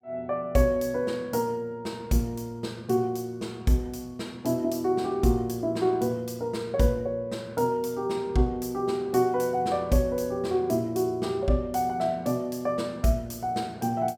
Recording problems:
none

